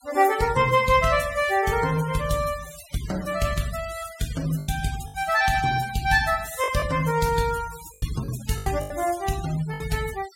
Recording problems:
denoising artefacts; signal-to-artefact ratio 15 dB
lost packets; 5% of the sound replaced, filled with the last packet

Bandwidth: 16.5 kHz